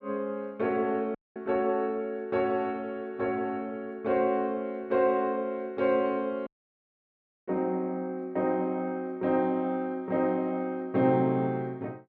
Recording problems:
audio cutting out; at 1 s and at 6.5 s for 1 s

